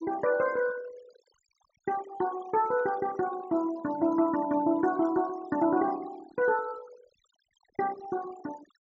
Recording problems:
treble missing; nothing above 8 kHz
noise reduction artefacts; signal-to-artefact ratio 18 dB

